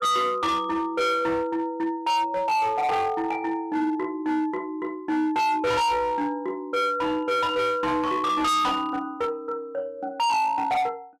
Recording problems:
distorted audio; hard clipping, signal-to-distortion ratio 6 dB

